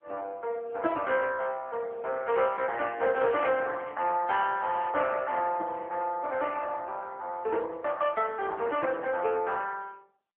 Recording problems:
telephone audio; 340 Hz to 3.3 kHz, AMR-NB

